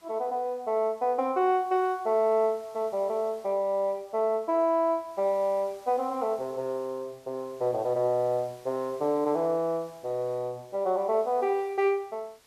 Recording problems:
hiss; slope -1 dB per octave, SNR 28 dB

